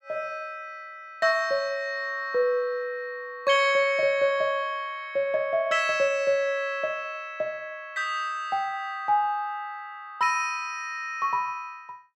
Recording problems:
none

